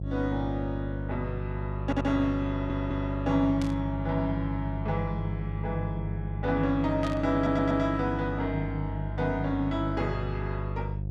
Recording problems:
mains hum; 50 Hz, harmonics up to 500 Hz, SNR 4 dB
stutter; at 2 s, at 2.5 s and at 7.5 s
static burst; at 3.5 s and at 7 s; peak -7 dB vs average level

